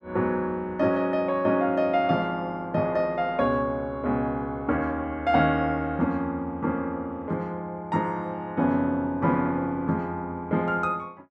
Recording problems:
none

